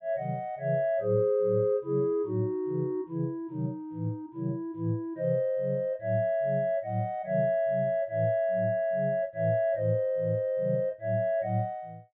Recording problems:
low-pass filter; nothing above 4 kHz

